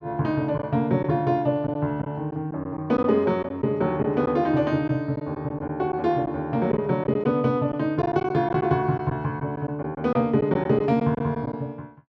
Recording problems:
packet loss; 5% of the sound replaced, filled with silence

